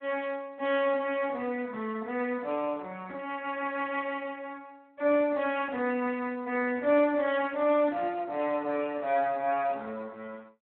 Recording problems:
phone line; 320 Hz to 3.6 kHz, Speex

